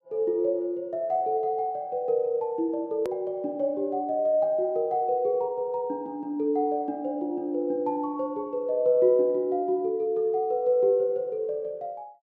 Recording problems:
hard cut with a click; at 3 s

